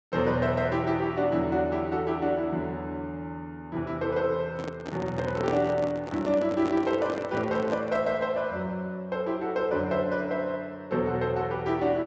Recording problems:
treble cut off; nothing above 8 kHz
handling noise; from 4.5 to 8 s; peak 0 dB vs average level

